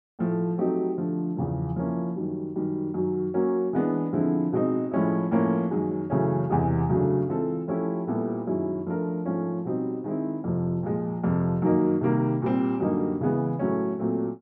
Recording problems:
none

